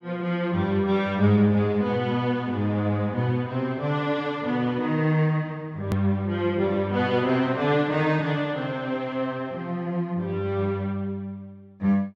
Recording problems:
click at an edit; at 6 s

